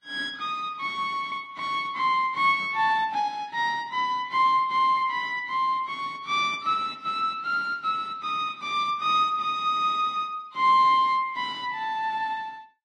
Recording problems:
codec artefacts; Vorbis, log-spectral distance 2 dB, nothing above 11.3 kHz

